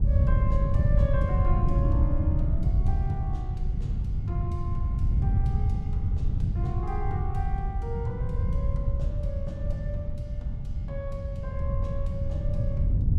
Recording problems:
wind on the microphone; below 110 Hz, SNR -11 dB

